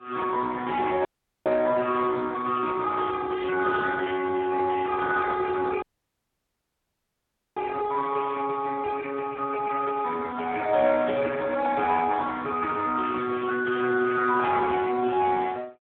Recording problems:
telephone audio; 320 Hz to 2 kHz, Speex
dropout; at 1 s and at 6 s for 1.5 s

